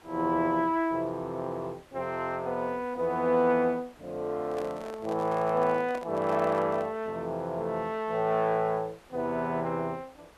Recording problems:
background hiss; SNR 26 dB
microphone handling noise; from 4.5 to 7 s; peak -8 dB vs average level

